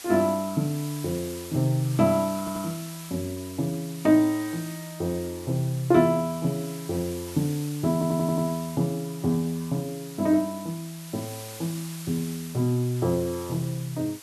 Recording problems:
hiss; slope +1 dB per octave, SNR 15 dB
audio stuttering; at 2.5 s and at 8 s

